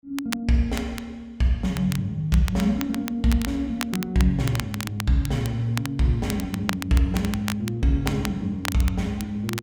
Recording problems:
crackle; vinyl, SNR 11 dB

